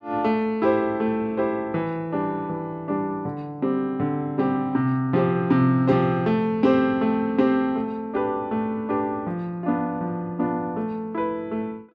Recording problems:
none

